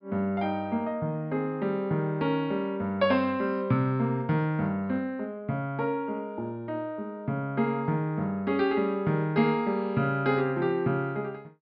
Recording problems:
low-pass filter; nothing above 5.5 kHz

